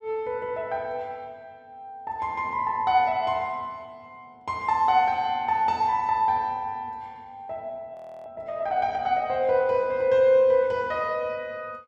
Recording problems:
audio freezing; at 8 s

